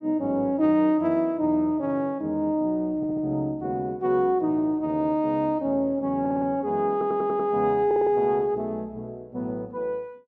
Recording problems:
stutter; 4 times, first at 3 s

